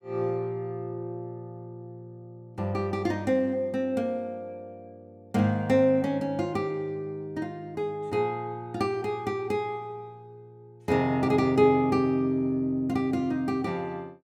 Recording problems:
none

